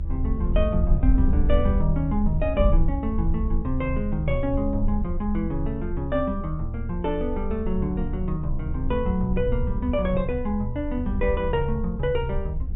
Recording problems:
low-pass filter; nothing above 4 kHz
rumble; below 72 Hz, strongest tone 24 Hz, SNR 2 dB

